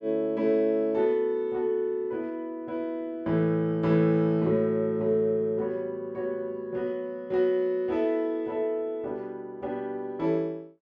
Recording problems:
none

